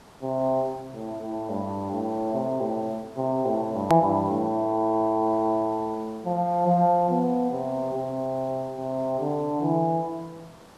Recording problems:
background hiss; SNR 24 dB
edit click; at 4 s

